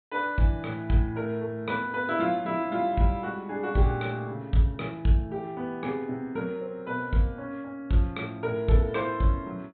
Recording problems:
treble missing; nothing above 4.1 kHz

